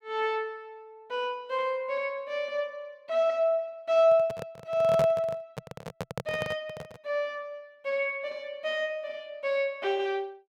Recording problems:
handling noise; from 4 to 7 s; peak +1 dB vs average level

